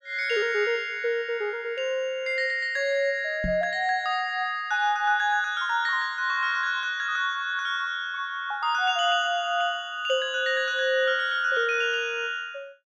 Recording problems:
microphone thump; at 3.5 s; peak -2 dB vs average level

